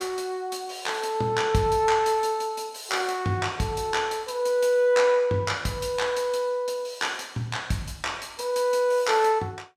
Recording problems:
none

